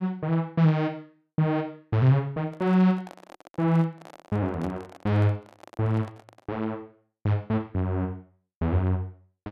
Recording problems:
microphone handling noise; from 2.5 to 6.5 s; peak -12 dB vs average level

